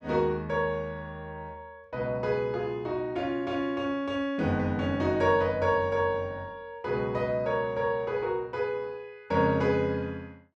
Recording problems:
none

